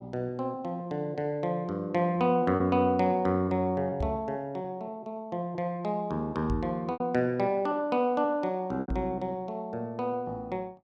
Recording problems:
lost packets; 3% of the sound replaced, filled with repeated pitch periods
microphone bump; at 4 s, at 6.5 s and at 9 s; peak 0 dB vs average level

